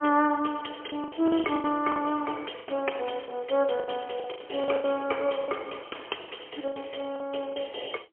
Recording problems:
phone line; 280 Hz to 3.2 kHz, AMR-NB, then MP3
lost packets; 13% of the sound replaced, filled with the last packet

